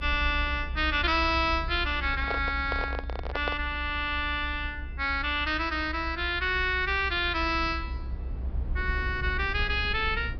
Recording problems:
low-pass filter; nothing above 5.5 kHz
rumble; below 66 Hz, strongest tone 64 Hz, SNR 8 dB
microphone handling noise; from 2 to 3.5 s; peak -2 dB vs average level

